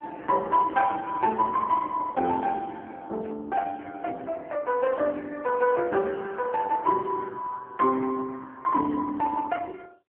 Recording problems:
phone line; 260 Hz to 2.6 kHz, AMR-NB

